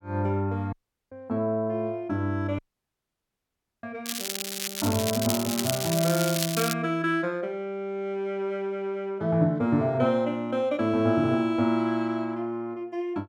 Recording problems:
audio cutting out; at 0.5 s and at 2.5 s for 1 s
crackle; from 4 to 6.5 s; loose cable, SNR 3 dB

